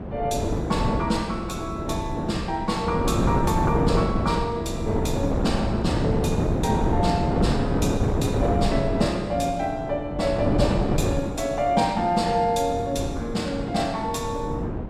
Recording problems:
wind noise; below 410 Hz, SNR 0 dB

